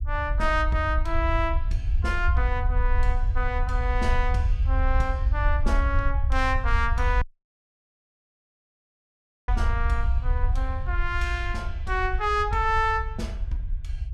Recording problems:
low-frequency rumble; below 66 Hz, SNR -1 dB
dropout; at 7 s for 2.5 s

